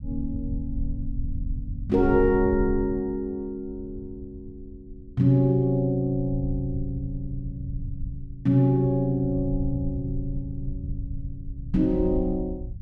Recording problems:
low-frequency rumble; below 84 Hz, SNR 10 dB

